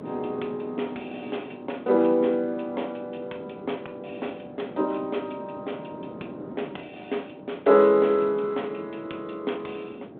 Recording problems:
telephone audio; 260 Hz to 3.7 kHz, G.726
wind noise; below 470 Hz, SNR 15 dB

